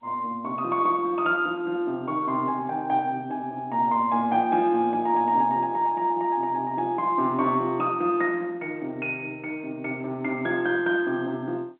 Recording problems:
phone line; 240 Hz to 3.8 kHz, G.711

